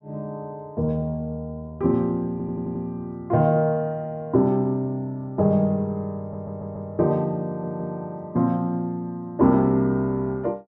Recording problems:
audio stuttering; at 2.5 s, at 6 s and at 7.5 s

